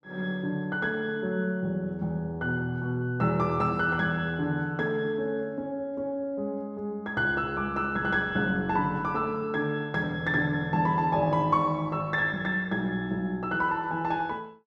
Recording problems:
none

